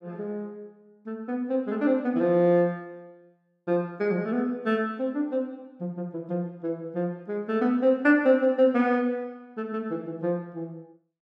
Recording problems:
none

